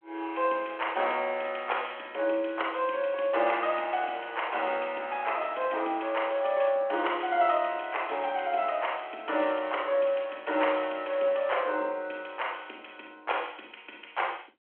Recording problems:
telephone audio; 300 Hz to 3.3 kHz, G.726

